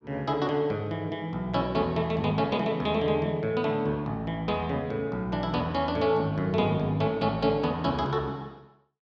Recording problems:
none

